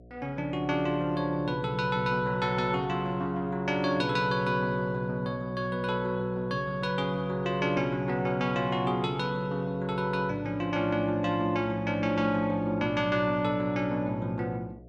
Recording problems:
hum; 60 Hz, harmonics up to 720 Hz, SNR 22 dB

